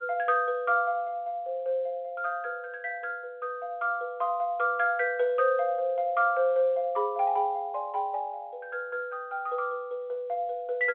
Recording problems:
telephone audio; 320 Hz to 3.5 kHz, G.711

